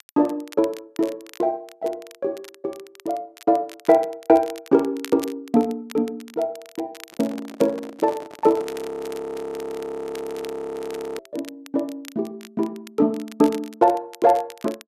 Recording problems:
crackle; vinyl, SNR 20 dB
handling noise; from 7 to 8.5 s; peak -9 dB vs average level
frozen audio; at 8.5 s for 2.5 s

